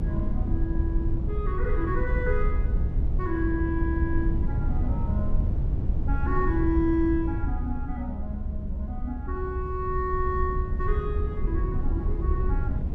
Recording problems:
low-frequency rumble; below 86 Hz, SNR -3 dB

